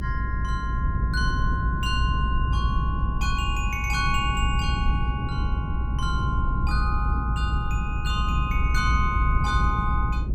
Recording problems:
low-frequency rumble; below 110 Hz, strongest tone 58 Hz, SNR -3 dB

